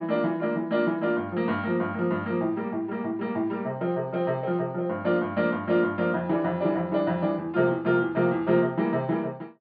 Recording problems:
low-pass filter; nothing above 4.9 kHz

